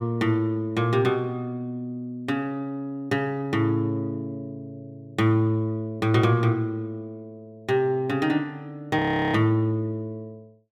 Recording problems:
audio freezing; at 9 s

